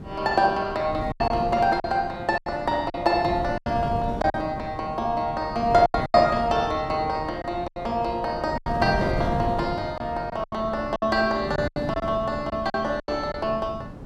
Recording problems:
wind noise; below 280 Hz, SNR 10 dB
packet loss; 9% of the sound replaced, filled with silence

